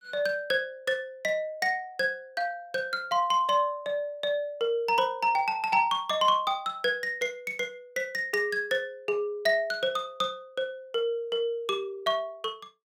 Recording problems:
none

